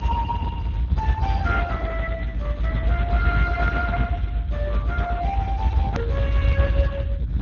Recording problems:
treble missing; nothing above 6.6 kHz
codec artefacts; Speex, log-spectral distance 2 dB
hum; 60 Hz, harmonics up to 300 Hz, SNR 15 dB
low-frequency rumble; below 110 Hz, strongest tone 52 Hz, SNR -3 dB
edit click; at 6 s

